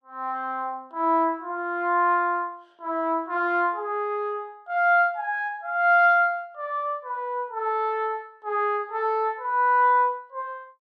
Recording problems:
none

